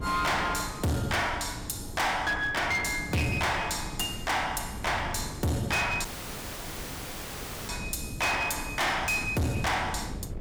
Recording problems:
distortion; hard clipping, signal-to-distortion ratio 6 dB
wind on the microphone; below 250 Hz, SNR 12 dB
dropout; at 6 s for 1.5 s

